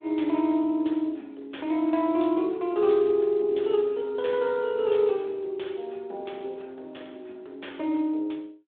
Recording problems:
phone line; 260 Hz to 3.6 kHz, Speex

